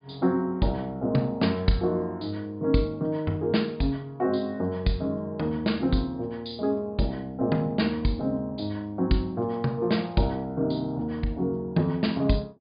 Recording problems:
treble missing; nothing above 4.9 kHz

